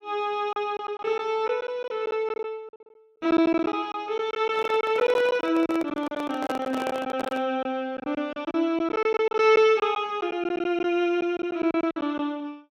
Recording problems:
packet loss; 12% of the sound replaced, filled with silence
microphone handling noise; from 4.5 to 7.5 s; peak -2 dB vs average level

